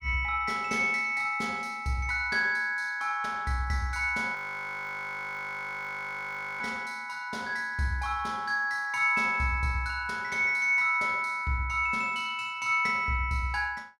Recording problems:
frozen audio; at 4.5 s for 2.5 s

